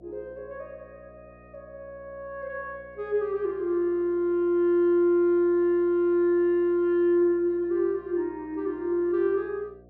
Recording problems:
hum; 60 Hz, harmonics up to 720 Hz, SNR 29 dB

